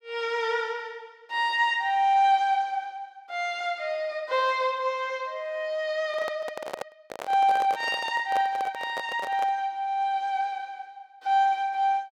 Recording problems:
handling noise; from 6 to 9.5 s; peak -3 dB vs average level

